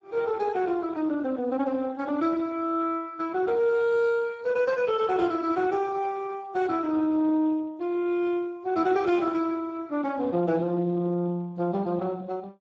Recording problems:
lossy codec; Speex, log-spectral distance 3 dB

